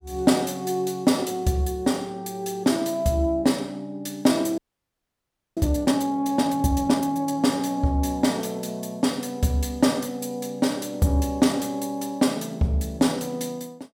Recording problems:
audio freezing; at 4.5 s for 1 s

